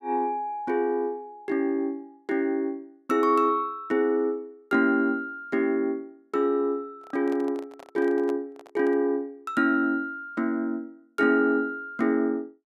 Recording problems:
microphone handling noise; from 7 to 9 s; peak -11 dB vs average level

